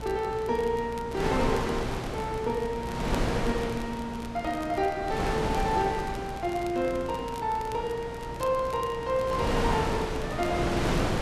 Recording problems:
hum; 60 Hz, harmonics up to 600 Hz, SNR 15 dB
wind noise; below 940 Hz, SNR 3 dB
crackling; vinyl, SNR 20 dB

